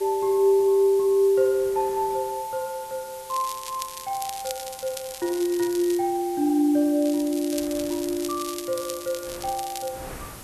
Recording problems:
background hiss; SNR 17 dB
wind noise; below 1.3 kHz, SNR 26 dB
crackle; from 3.5 to 6 s and from 7 to 10 s; loose cable, SNR 13 dB

